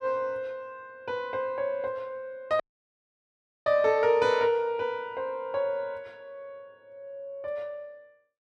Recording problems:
audio cutting out; at 2.5 s for 1 s

